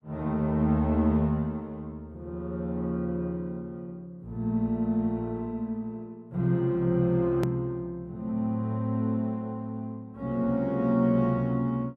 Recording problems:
edit click; at 7.5 s

